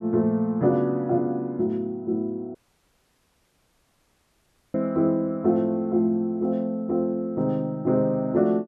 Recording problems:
audio cutting out; at 2.5 s for 2 s

